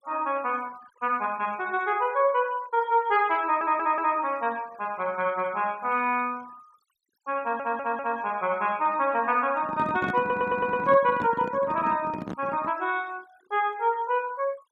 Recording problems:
denoising artefacts; signal-to-artefact ratio 25 dB
stutter; at 3.5 s, at 7.5 s and at 10 s
handling noise; from 9.5 to 13 s; peak -3 dB vs average level

